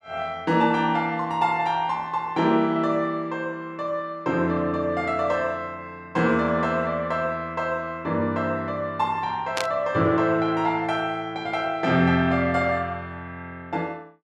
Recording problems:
burst of static; at 9.5 s; peak +1 dB vs average level

